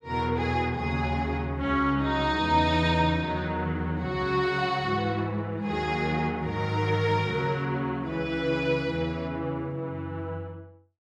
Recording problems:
none

